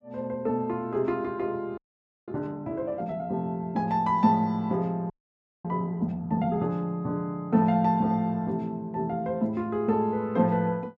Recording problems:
audio freezing; at 2 s and at 5 s for 0.5 s

